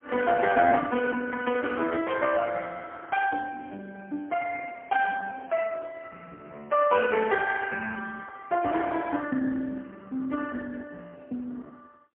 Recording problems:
phone line; 220 Hz to 2.5 kHz, AMR-NB, then MP3

